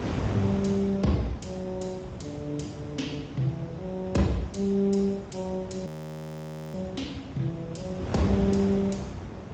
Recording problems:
lossy codec; Speex, log-spectral distance 3 dB
wind noise; below 500 Hz, SNR 7 dB
frozen audio; at 6 s for 1 s

